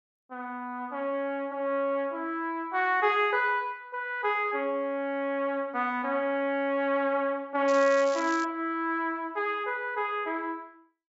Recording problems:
treble cut off; nothing above 7.5 kHz
crackling; at 7.5 s; loose cable, SNR 15 dB

